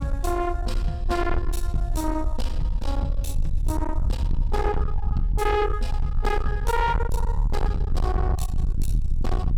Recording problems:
distorted audio; soft clipping, signal-to-distortion ratio 7 dB
low-frequency rumble; below 68 Hz, SNR -1 dB

